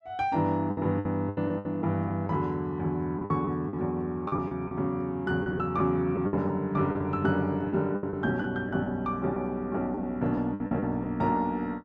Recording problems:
lost packets; 10% of the sound replaced, filled with the last packet

